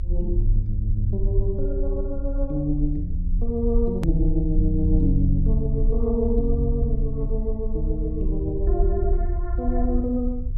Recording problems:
rumble; below 56 Hz, strongest tone 32 Hz, SNR 0 dB
edit click; at 4 s

